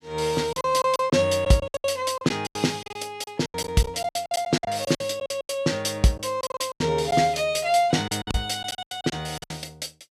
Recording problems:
lost packets; 17% of the sound replaced, filled with silence

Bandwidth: 14.5 kHz